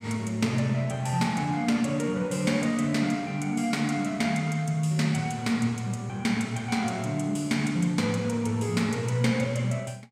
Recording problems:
none

